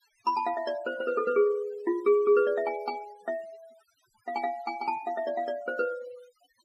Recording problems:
noise reduction artefacts; signal-to-artefact ratio 24 dB

